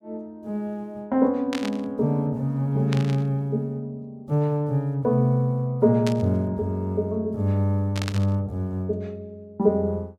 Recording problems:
static burst; 4 times, first at 1.5 s; peak -3 dB vs average level

